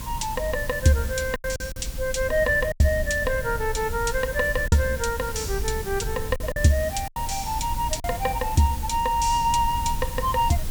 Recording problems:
background hiss; slope 0 dB per octave, SNR 13 dB
rumble; below 90 Hz, SNR 10 dB
lost packets; 5% of the sound replaced, filled with silence

